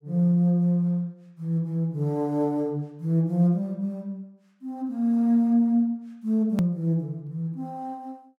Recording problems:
hard cut with a click; at 6.5 s

